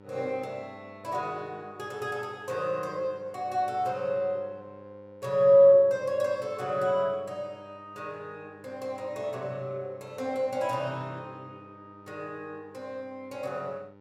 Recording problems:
electrical hum; 50 Hz, harmonics up to 2.3 kHz, SNR 24 dB

